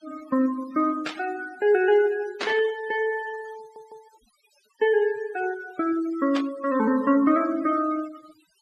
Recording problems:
denoising artefacts; signal-to-artefact ratio 20 dB
burst of static; at 1 s, at 2.5 s and at 6.5 s; peak -2 dB vs average level
audio stuttering; at 3.5 s

